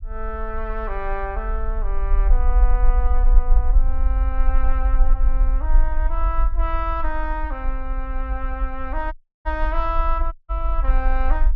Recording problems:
low-frequency rumble; below 44 Hz, strongest tone 22 Hz, SNR -6 dB
audio cutting out; at 9 s and at 10 s

